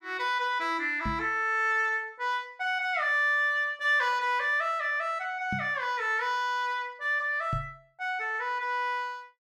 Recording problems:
microphone thump; at 1 s, at 5.5 s and at 7.5 s; peak -2 dB vs average level

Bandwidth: 14.5 kHz